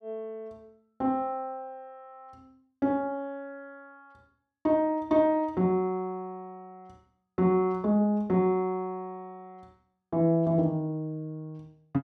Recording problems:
none

